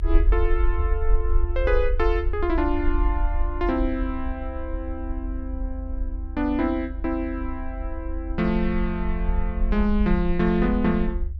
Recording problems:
low-frequency rumble; below 52 Hz, SNR 2 dB

